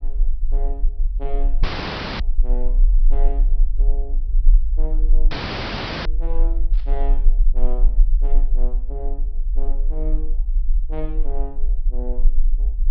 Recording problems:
treble cut off; nothing above 5.5 kHz
low-frequency rumble; below 36 Hz, strongest tone 20 Hz, SNR -14 dB
dropout; at 1.5 s for 0.5 s and at 5.5 s for 1 s
static burst; at 6.5 s; peak -7 dB vs average level

